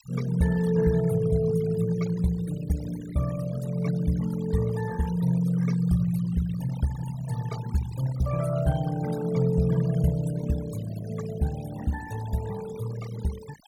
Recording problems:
denoising artefacts; signal-to-artefact ratio 17 dB

